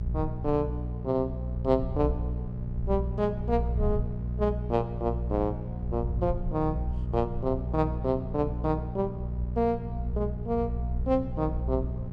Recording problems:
electrical hum; 60 Hz, harmonics up to 600 Hz, SNR 5 dB
rumble; below 68 Hz, strongest tone 58 Hz, SNR 6 dB

